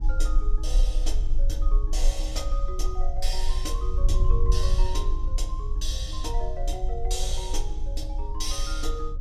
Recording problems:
low-frequency rumble; below 36 Hz, strongest tone 20 Hz, SNR -3 dB
wind on the microphone; below 58 Hz, SNR -3 dB

